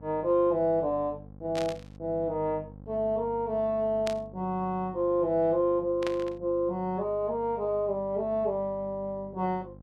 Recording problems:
electrical hum; 50 Hz, harmonics up to 850 Hz, SNR 19 dB
burst of static; at 1.5 s, at 4 s and at 6 s; peak -4 dB vs average level

